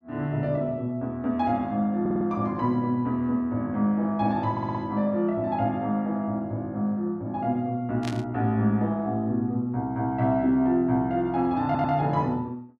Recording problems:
audio stuttering; at 2 s, at 4.5 s and at 12 s
static burst; at 8 s; peak -6 dB vs average level

